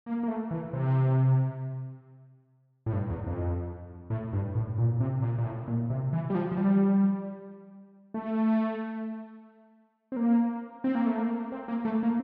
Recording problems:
none

